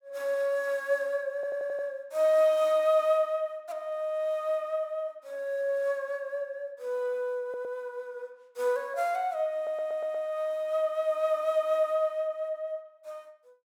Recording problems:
stutter; at 1.5 s, at 7.5 s and at 9.5 s

